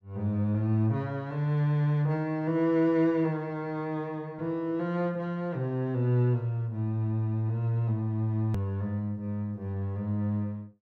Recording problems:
hard cut with a click; at 8.5 s

